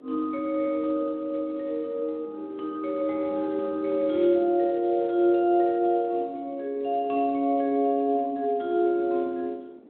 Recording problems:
telephone audio; 260 Hz to 3.3 kHz, Speex
wind noise; below 440 Hz, SNR 22 dB

